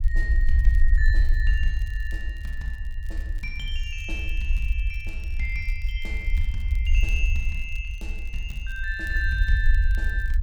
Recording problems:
rumble; below 58 Hz, SNR -6 dB
crackling; vinyl, SNR 23 dB

